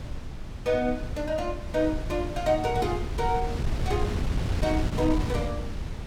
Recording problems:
wind on the microphone; below 160 Hz, SNR 3 dB

